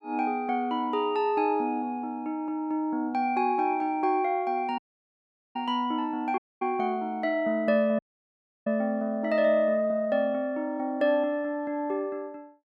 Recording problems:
dropout; at 5 s for 1 s, at 6.5 s and at 8 s for 0.5 s

